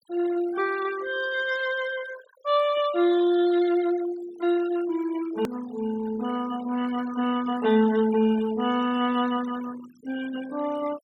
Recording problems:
noise reduction artefacts; signal-to-artefact ratio 16 dB
edit click; at 5.5 s

